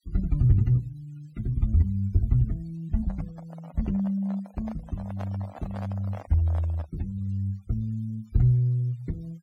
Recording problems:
noise reduction artefacts; signal-to-artefact ratio 28 dB
handling noise; from 3 to 7 s; peak -10 dB vs average level

